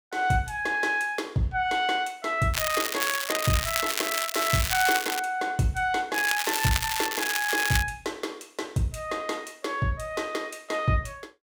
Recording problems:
crackling; from 2.5 to 5 s and from 6 to 8 s; loose cable, SNR 1 dB

